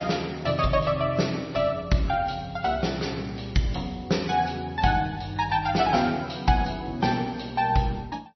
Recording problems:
codec artefacts; MP2, then MP3, log-spectral distance 5 dB, nothing above 5.8 kHz

